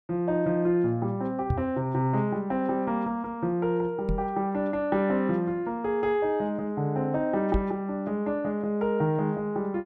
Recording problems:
knock on the microphone; at 1.5 s, at 4 s and at 7.5 s; peak +4 dB vs average level

